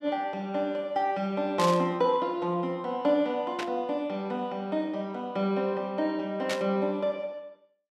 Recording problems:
burst of static; at 1.5 s, at 3.5 s and at 6.5 s; peak -1 dB vs average level

